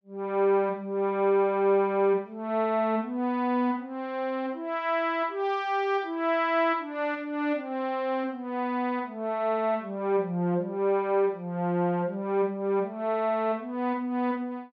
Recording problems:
none

